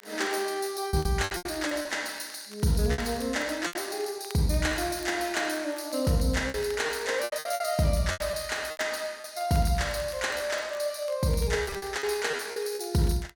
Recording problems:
crackle; vinyl, SNR 23 dB
packet loss; 10% of the sound replaced, filled with repeated pitch periods

